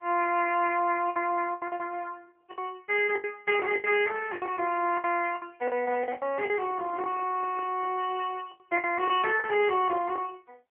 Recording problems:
phone line; 280 Hz to 3.1 kHz, AMR-NB
packet loss; 11% of the sound replaced, filled with the last packet
microphone handling noise; from 6.5 to 8 s; peak -14 dB vs average level

